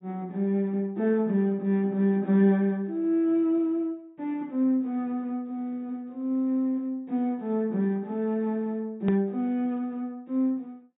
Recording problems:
low-pass filter; nothing above 4 kHz
edit click; at 9 s

